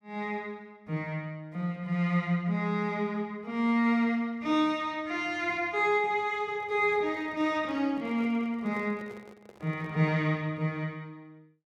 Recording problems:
microphone handling noise; from 6.5 to 10 s; peak -12 dB vs average level

